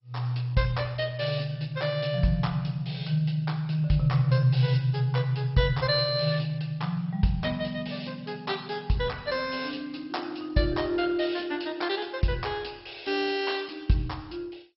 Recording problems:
lossy codec; MP2, log-spectral distance 4 dB, nothing above 5.5 kHz

